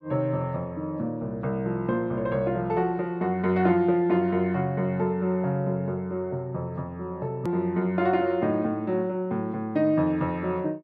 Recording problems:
edit click; at 7.5 s

